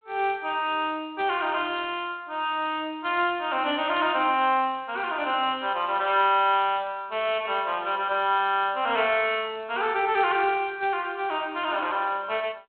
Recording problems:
telephone audio; 240 Hz to 3.7 kHz, G.726

